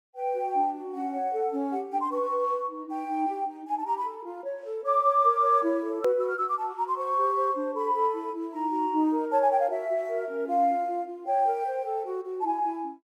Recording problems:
edit click; at 6 s

